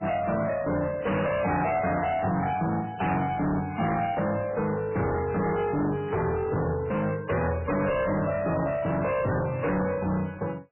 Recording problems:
codec artefacts; MP3, log-spectral distance 4 dB, nothing above 2.7 kHz
distorted audio; soft clipping, signal-to-distortion ratio 6 dB

